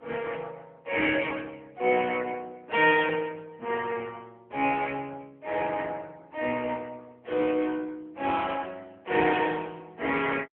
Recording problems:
telephone audio; 240 Hz to 3.2 kHz, AMR-NB

